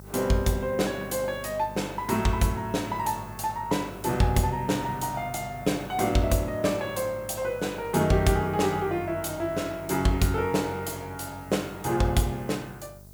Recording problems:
electrical hum; 50 Hz, harmonics up to 1.1 kHz, SNR 19 dB
background hiss; slope +7 dB per octave, SNR 25 dB

